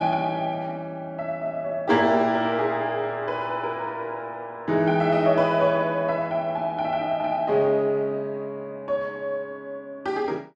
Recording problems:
none

